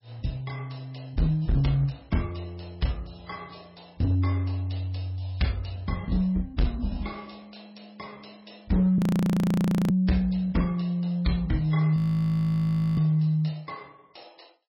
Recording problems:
lossy codec; MP3, log-spectral distance 5 dB, nothing above 16.5 kHz
distorted audio; hard clipping, signal-to-distortion ratio 11 dB
frozen audio; at 9 s for 1 s and at 12 s for 1 s

